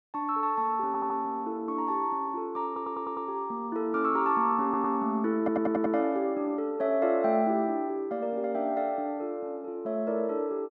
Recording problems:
stutter; 4 times, first at 1 s

